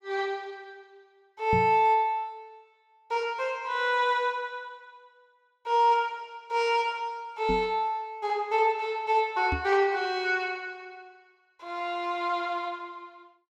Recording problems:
microphone bump; at 1.5 s, at 7.5 s and at 9.5 s; peak 0 dB vs average level

